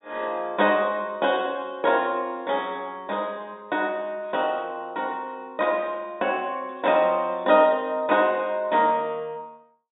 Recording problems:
treble missing; nothing above 4 kHz

